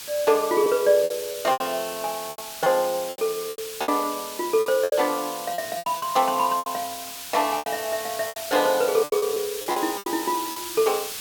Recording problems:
hiss; slope +2 dB per octave, SNR 9 dB
packet loss; 13% of the sound replaced, filled with repeated pitch periods

